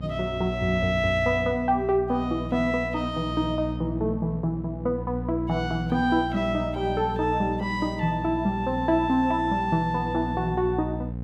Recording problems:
mains hum; 60 Hz, harmonics up to 540 Hz, SNR 8 dB

